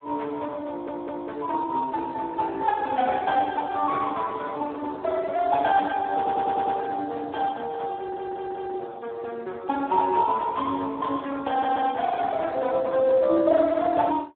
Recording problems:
phone line; 240 Hz to 2.2 kHz, Speex
audio stuttering; 4 times, first at 0.5 s

